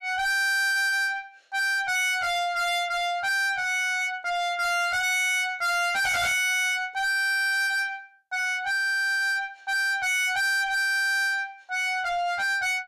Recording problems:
distorted audio; soft clipping, signal-to-distortion ratio 6 dB

